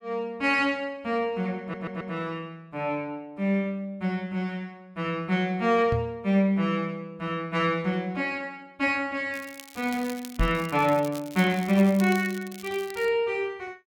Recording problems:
audio stuttering; at 1.5 s
microphone thump; at 6 s and at 10 s; peak +3 dB vs average level
crackling; from 9.5 to 13 s; loose cable, SNR 17 dB

